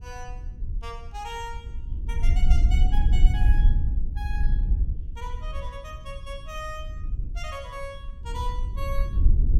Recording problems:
wind on the microphone; below 58 Hz, SNR -12 dB

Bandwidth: 16.5 kHz